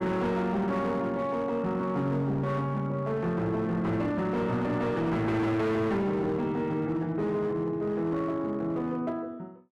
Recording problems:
distortion; hard clipping, uneven, signal-to-distortion ratio 10 dB

